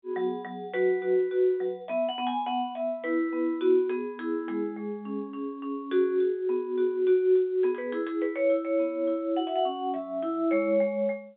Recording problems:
telephone audio; 220 Hz to 3.8 kHz, G.711

